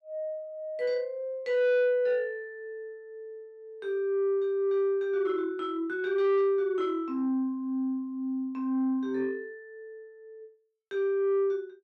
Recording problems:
distorted audio; soft clipping, signal-to-distortion ratio 11 dB

